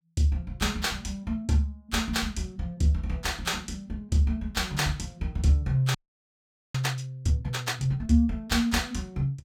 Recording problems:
audio freezing; at 6 s for 1 s

